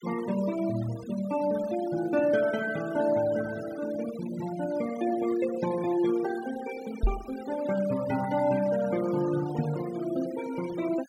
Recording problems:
denoising artefacts; signal-to-artefact ratio 15 dB
microphone thump; at 7 s and at 9.5 s; peak +5 dB vs average level

